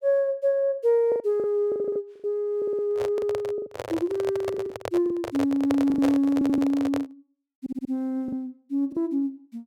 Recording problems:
packet loss; 8% of the sound replaced, filled with the last packet
stutter; 4 times, first at 2 s
handling noise; from 3 to 7 s; peak +1 dB vs average level

